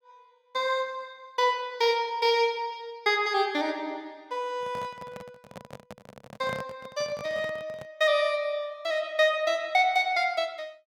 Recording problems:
microphone handling noise; from 4.5 to 8 s; peak -6 dB vs average level

